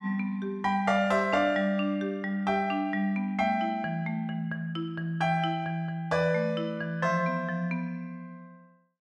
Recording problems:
none

